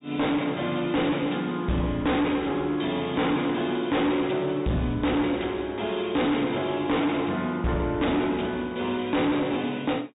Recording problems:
treble missing; nothing above 4 kHz
distorted audio; hard clipping, signal-to-distortion ratio 7 dB

